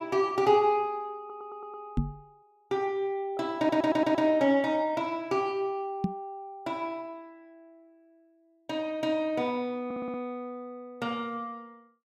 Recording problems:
stutter; at 1 s, at 3.5 s and at 10 s
knock on the microphone; at 2 s and at 6 s; peak +5 dB vs average level

